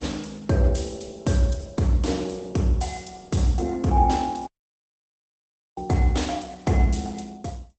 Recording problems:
lossy compression; Opus, log-spectral distance 5 dB, nothing above 8 kHz
dropout; at 4.5 s for 1.5 s

